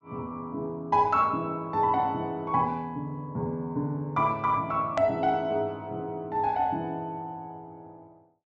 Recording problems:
treble missing; nothing above 7.8 kHz
click at an edit; at 5 s

